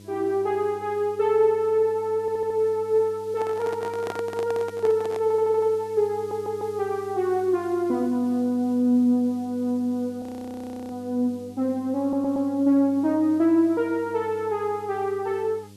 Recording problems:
electrical hum; 50 Hz, harmonics up to 600 Hz, SNR 23 dB
hiss; SNR 29 dB
stutter; 4 times, first at 2 s
handling noise; from 3.5 to 5 s; peak -5 dB vs average level
audio freezing; at 10 s for 0.5 s

